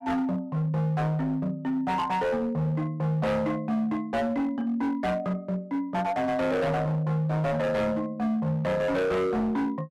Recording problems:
distortion; hard clipping, signal-to-distortion ratio 7 dB

